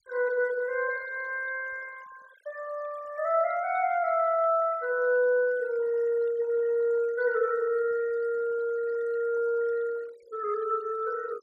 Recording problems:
denoising artefacts; signal-to-artefact ratio 22 dB

